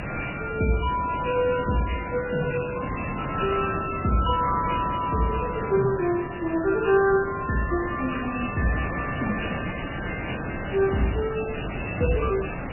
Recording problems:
lossy compression; MP3, log-spectral distance 16 dB, nothing above 2.7 kHz
background hiss; SNR 7 dB

